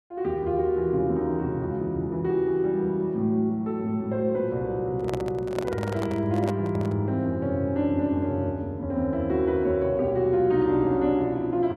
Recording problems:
handling noise; from 5 to 7 s; peak -2 dB vs average level

